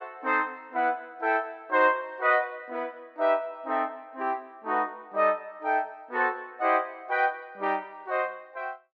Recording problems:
none

